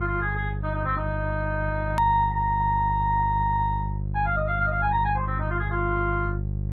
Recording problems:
lossy codec; MP2, then MP3, log-spectral distance 2 dB, nothing above 13.1 kHz
electrical hum; 50 Hz, harmonics up to 400 Hz, SNR 4 dB
click at an edit; at 2 s

